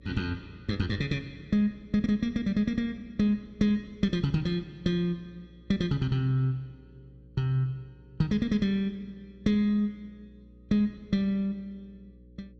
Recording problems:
hum; 60 Hz, harmonics up to 540 Hz, SNR 25 dB

